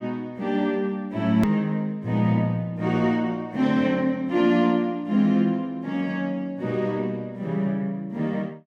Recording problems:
hard cut with a click; at 1.5 s

